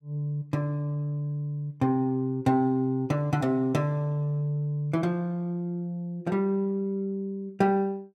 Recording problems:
none

